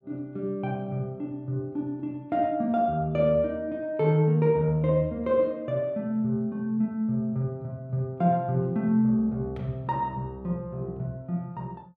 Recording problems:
none

